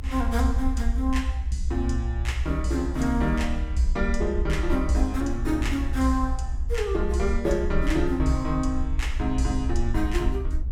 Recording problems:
low-frequency rumble; below 66 Hz, SNR 2 dB

